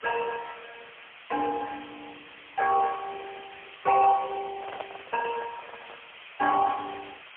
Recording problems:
telephone audio; 320 Hz to 2.2 kHz, AMR-NB, then MP3
background hiss; SNR 18 dB
handling noise; from 4.5 to 6 s; peak -5 dB vs average level

